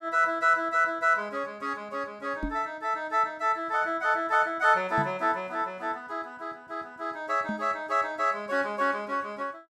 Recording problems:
microphone thump; at 2.5 s, at 5 s and at 7.5 s; peak -2 dB vs average level

